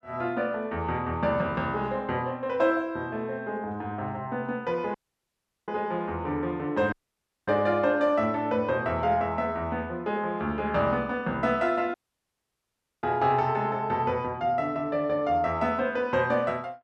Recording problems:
dropout; at 5 s for 0.5 s, at 7 s for 0.5 s and at 12 s for 1 s

